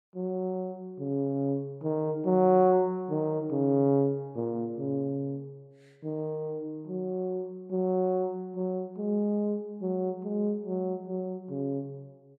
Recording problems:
none

